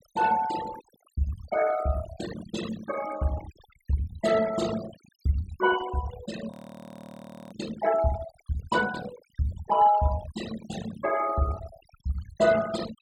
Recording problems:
denoising artefacts; signal-to-artefact ratio 13 dB
audio freezing; at 6.5 s for 1 s

